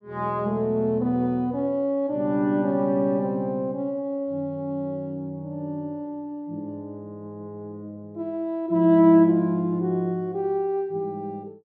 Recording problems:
none

